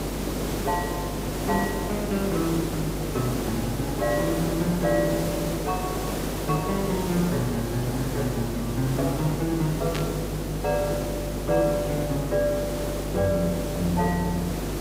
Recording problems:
hum; 50 Hz, harmonics up to 400 Hz, SNR 7 dB
background hiss; SNR 4 dB
static burst; at 10 s; peak 0 dB vs average level

